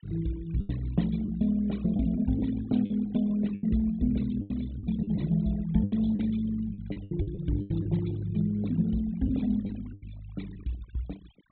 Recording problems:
treble missing; nothing above 4 kHz
denoising artefacts; signal-to-artefact ratio 21 dB
lost packets; 8% of the sound replaced, filled with the last packet

